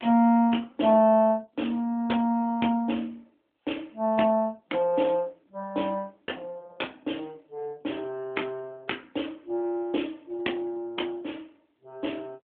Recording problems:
telephone audio; 260 Hz to 3.6 kHz, AMR-NB

